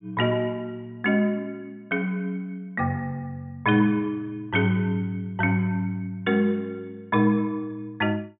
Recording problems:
low-pass filter; nothing above 4 kHz

